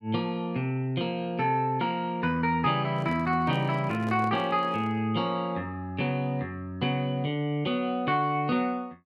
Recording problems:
microphone handling noise; from 3 to 5 s; peak -8 dB vs average level

